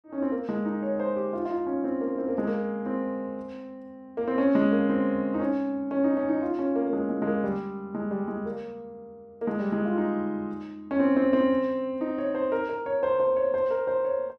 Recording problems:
none

